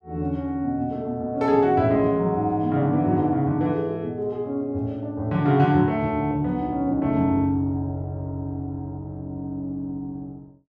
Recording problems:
none

